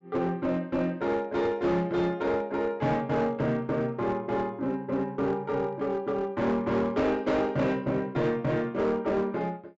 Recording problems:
treble cut off; nothing above 8 kHz
distorted audio; hard clipping, uneven, signal-to-distortion ratio 11 dB

